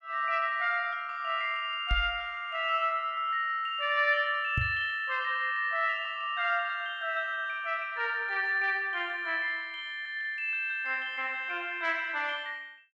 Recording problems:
microphone thump; at 2 s and at 4.5 s; peak +2 dB vs average level

